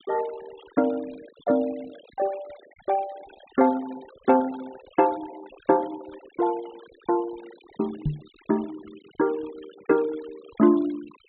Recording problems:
treble missing; nothing above 4 kHz
noise reduction artefacts; signal-to-artefact ratio 22 dB
knock on the microphone; at 8 s; peak +3 dB vs average level

